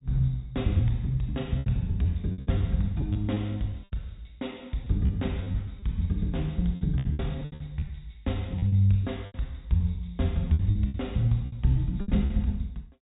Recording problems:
treble missing; nothing above 4 kHz
packet loss; 11% of the sound replaced, filled with repeated pitch periods

